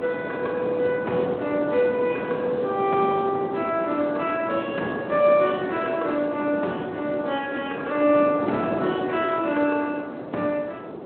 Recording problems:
phone line; 240 Hz to 3.3 kHz, Speex
wind noise; below 650 Hz, SNR 7 dB

